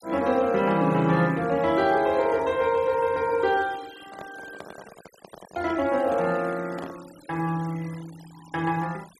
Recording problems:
noise reduction artefacts; signal-to-artefact ratio 23 dB
microphone handling noise; from 4 to 7 s; peak -10 dB vs average level

